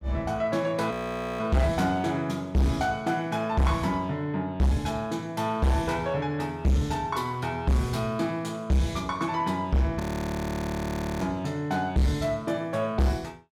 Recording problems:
distortion; soft clipping, signal-to-distortion ratio 6 dB
audio freezing; at 1 s and at 10 s for 1 s

